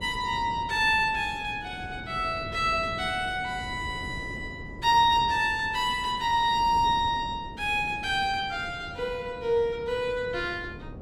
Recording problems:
wind noise; below 340 Hz, SNR 15 dB

